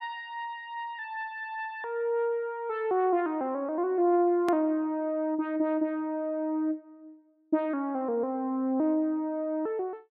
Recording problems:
treble missing; nothing above 5.5 kHz
click at an edit; at 4.5 s

